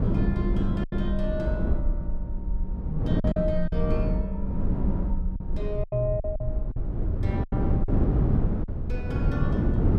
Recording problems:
rumble; below 54 Hz, SNR 1 dB
wind noise; below 230 Hz, SNR -4 dB
lost packets; 6% of the sound replaced, filled with silence

